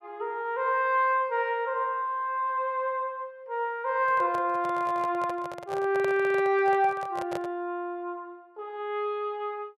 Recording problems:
microphone handling noise; from 4 to 7.5 s; peak -4 dB vs average level

